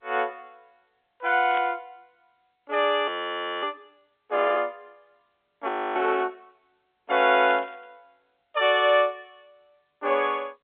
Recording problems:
phone line; 240 Hz to 3.7 kHz, G.711
static burst; at 1.5 s and at 7.5 s; peak -9 dB vs average level
frozen audio; at 3 s for 0.5 s and at 5.5 s

